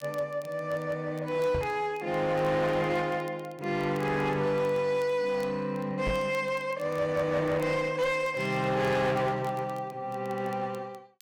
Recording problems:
distortion; hard clipping, uneven, signal-to-distortion ratio 11 dB
crackling; vinyl, SNR 28 dB
microphone bump; at 1.5 s and at 6 s; peak -1 dB vs average level

